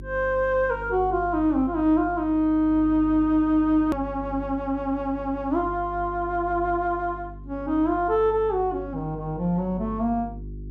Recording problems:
hum; 50 Hz, harmonics up to 400 Hz, SNR 15 dB
click at an edit; at 4 s

